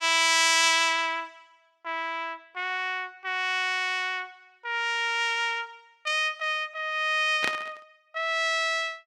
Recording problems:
burst of static; at 7.5 s; peak 0 dB vs average level

